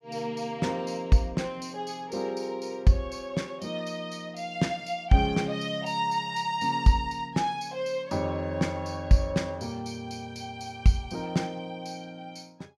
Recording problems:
none

